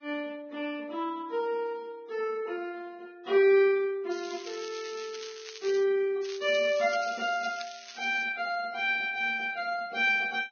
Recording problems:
lossy codec; Vorbis, log-spectral distance 5 dB, nothing above 5.5 kHz
crackle; from 4 to 6 s and from 6 to 8 s; loose cable, SNR 15 dB

